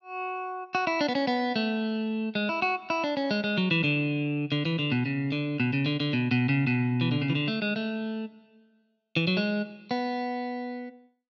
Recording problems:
treble missing; nothing above 6.8 kHz

